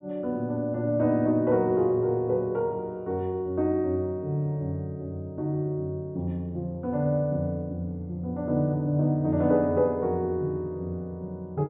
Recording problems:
treble missing; nothing above 4 kHz

